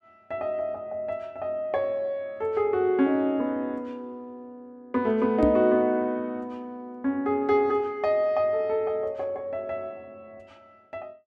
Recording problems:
microphone thump; at 5.5 s; peak +7 dB vs average level

